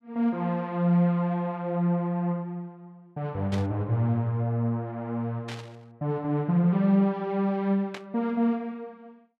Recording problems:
static burst; at 3.5 s, at 5.5 s and at 8 s; peak -8 dB vs average level

